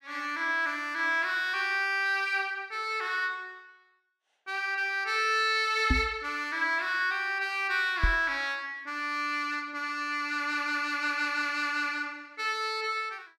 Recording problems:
knock on the microphone; at 6 s and at 8 s; peak +5 dB vs average level

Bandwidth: 14 kHz